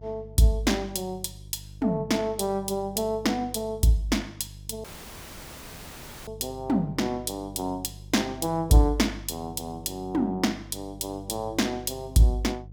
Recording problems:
mains hum; 50 Hz, harmonics up to 350 Hz, SNR 18 dB
audio cutting out; at 5 s for 1.5 s

